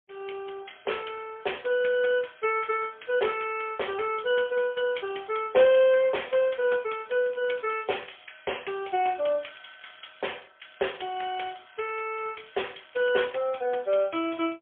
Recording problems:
phone line; 340 Hz to 3.3 kHz, AMR-NB, then MP3
crackling; from 7 to 10 s and from 11 to 13 s; loose cable, SNR 27 dB

